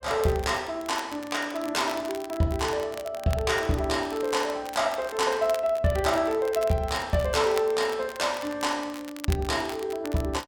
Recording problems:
crackling; vinyl, SNR 16 dB

